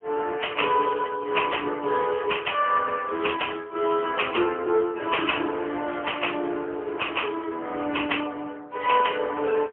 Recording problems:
telephone audio; 260 Hz to 3.3 kHz, AMR-NB, then MP3

